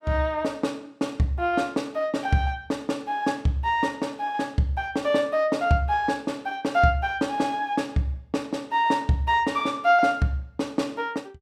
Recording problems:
none

